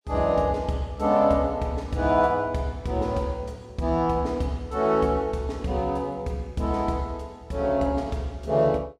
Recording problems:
none

